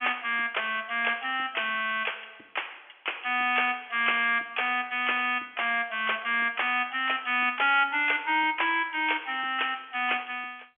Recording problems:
telephone audio; 300 Hz to 3.3 kHz, G.711

